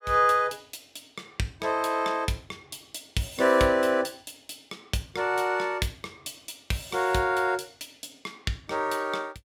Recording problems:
none

